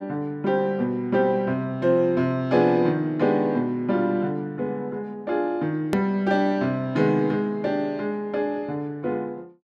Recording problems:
edit click; at 6 s

